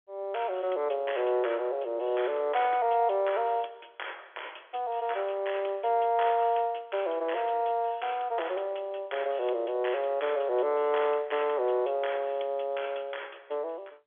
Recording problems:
telephone audio; 300 Hz to 3.4 kHz, G.711

